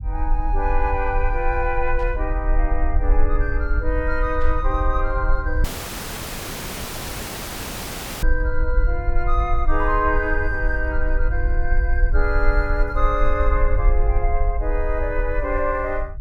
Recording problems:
rumble; below 48 Hz, SNR 0 dB
burst of static; at 2 s and at 4.5 s; peak -15 dB vs average level
audio cutting out; at 5.5 s for 2.5 s

